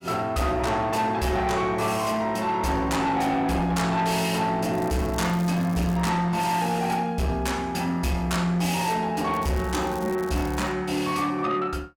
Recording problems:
distortion; soft clipping, signal-to-distortion ratio 11 dB
crackle; from 4.5 to 6 s and from 9.5 to 11 s; loose cable, SNR 20 dB

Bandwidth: 18 kHz